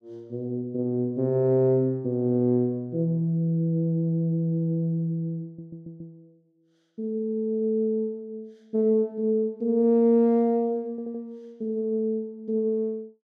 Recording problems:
audio stuttering; at 5.5 s and at 11 s

